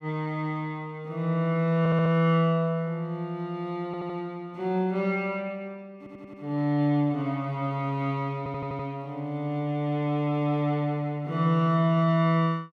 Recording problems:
audio stuttering; 4 times, first at 2 s

